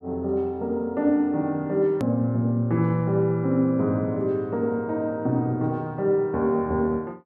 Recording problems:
edit click; at 2 s

